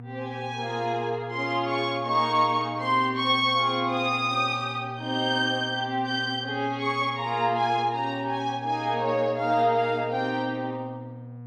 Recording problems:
hum; 60 Hz, harmonics up to 720 Hz, SNR 15 dB

